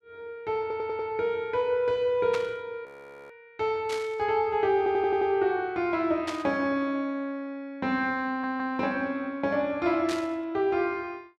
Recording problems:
audio stuttering; at 0.5 s, at 5 s and at 8.5 s
static burst; 4 times, first at 2.5 s; peak -4 dB vs average level
frozen audio; at 3 s

